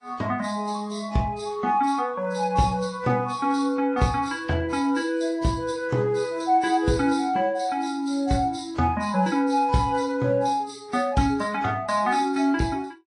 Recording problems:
lossy codec; MP3, then AAC, log-spectral distance 2 dB, nothing above 9.8 kHz

